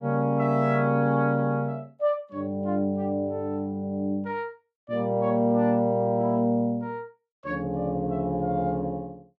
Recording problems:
none

